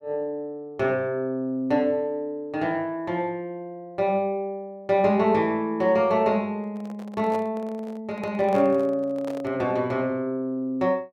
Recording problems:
microphone handling noise; from 6.5 to 9.5 s; peak -8 dB vs average level

